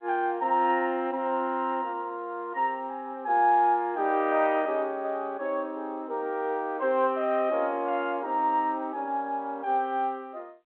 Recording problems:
phone line; 220 Hz to 3.7 kHz, G.711

